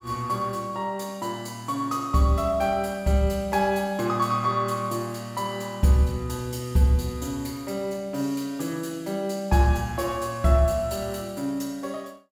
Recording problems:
none

